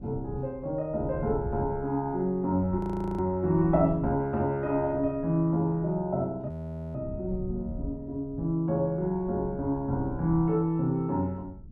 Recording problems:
wind on the microphone; below 150 Hz, SNR 14 dB
audio freezing; at 3 s and at 6.5 s

